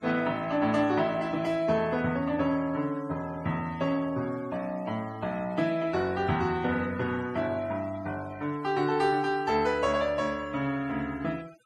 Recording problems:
denoising artefacts; signal-to-artefact ratio 21 dB

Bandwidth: 12.5 kHz